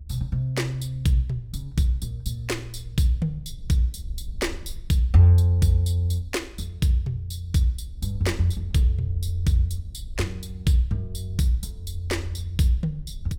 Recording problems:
low-frequency rumble; below 74 Hz, SNR 15 dB

